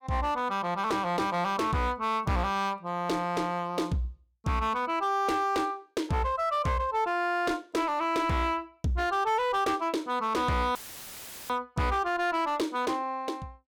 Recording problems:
distorted audio; hard clipping, signal-to-distortion ratio 11 dB
audio cutting out; at 11 s for 1 s; filled with static

